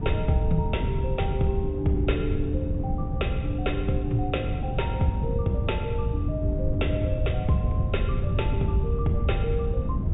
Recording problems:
low-pass filter; nothing above 4 kHz
rumble; below 120 Hz, SNR 0 dB
wind on the microphone; below 180 Hz, SNR 7 dB

